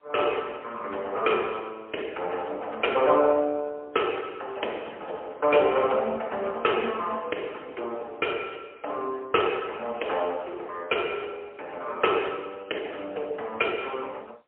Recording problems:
telephone audio; 320 Hz to 3.2 kHz, AMR-NB, then MP3

